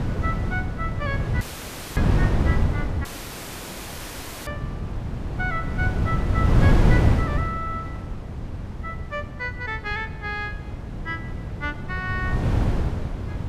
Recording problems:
wind noise; below 190 Hz, SNR -6 dB
audio cutting out; at 1.5 s for 0.5 s and at 3 s for 1.5 s

